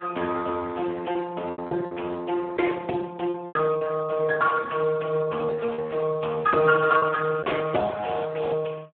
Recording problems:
telephone audio; 240 Hz to 2.7 kHz, Speex
lost packets; 6% of the sound replaced, filled with repeated pitch periods
crackling; from 6.5 to 8.5 s; loose cable, SNR 24 dB

